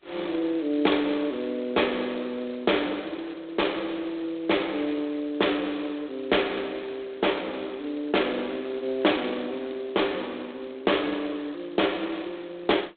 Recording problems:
telephone audio; 260 Hz to 3.8 kHz, G.726

